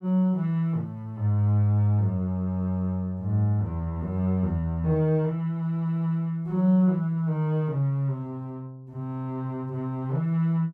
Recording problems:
none

